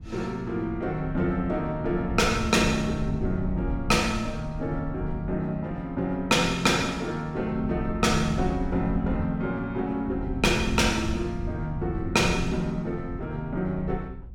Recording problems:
wind noise; below 110 Hz, SNR 9 dB

